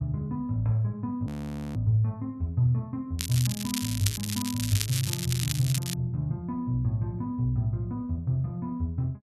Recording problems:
audio freezing; at 1.5 s
crackling; from 3 to 6 s; loose cable, SNR 4 dB

